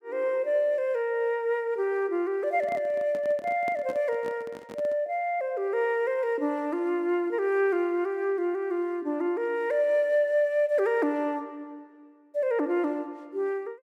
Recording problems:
handling noise; from 2.5 to 5 s; peak -9 dB vs average level

